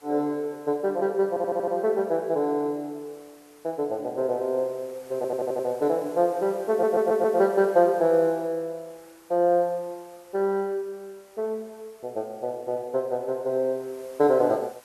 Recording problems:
hiss; SNR 27 dB
audio stuttering; at 1.5 s, at 5 s and at 6.5 s

